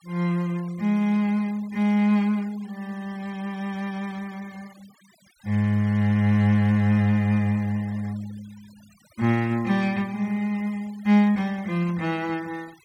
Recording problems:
denoising artefacts; signal-to-artefact ratio 25 dB

